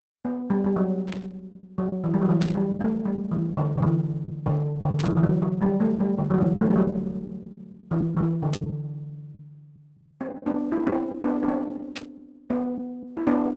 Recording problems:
codec artefacts; Opus, log-spectral distance 2 dB, nothing above 7.6 kHz
lost packets; 9% of the sound replaced, filled with the last packet
static burst; 5 times, first at 1 s; peak -6 dB vs average level

